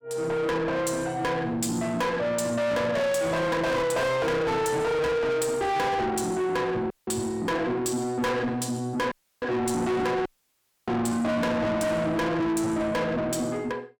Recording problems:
distorted audio; soft clipping, signal-to-distortion ratio 6 dB
audio cutting out; at 7 s, at 9 s and at 10 s for 0.5 s

